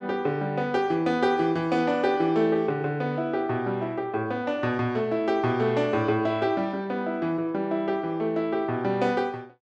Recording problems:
none

